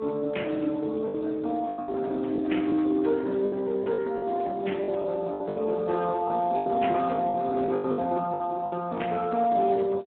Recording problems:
telephone audio; 190 Hz to 3.2 kHz, Speex
packet loss; 11% of the sound replaced, filled with the last packet

